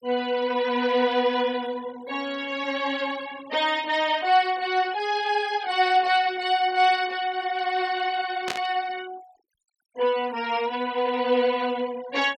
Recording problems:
noise reduction artefacts; signal-to-artefact ratio 21 dB
static burst; at 8.5 s; peak 0 dB vs average level

